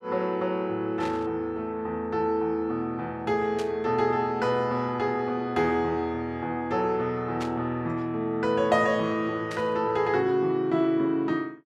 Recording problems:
static burst; 4 times, first at 1 s; peak -7 dB vs average level

